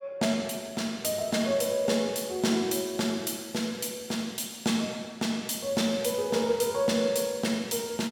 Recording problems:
none

